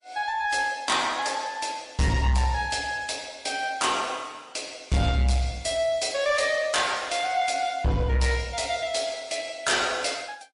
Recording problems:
codec artefacts; MP3, log-spectral distance 4 dB, nothing above 10.4 kHz
distortion; soft clipping, signal-to-distortion ratio 11 dB

